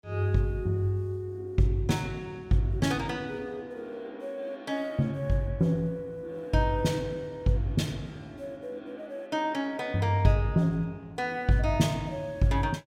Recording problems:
none

